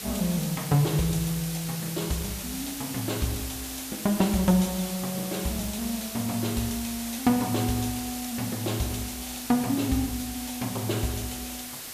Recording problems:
hiss; slope 0 dB per octave, SNR 7 dB

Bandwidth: 14.5 kHz